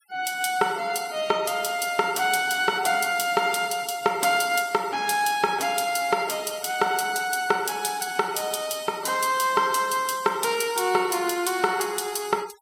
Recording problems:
noise reduction artefacts; signal-to-artefact ratio 20 dB

